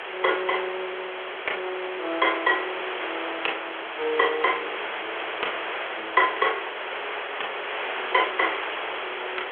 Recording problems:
phone line; 340 Hz to 3.5 kHz, G.726
hiss; SNR 5 dB
wind noise; below 820 Hz, SNR 20 dB

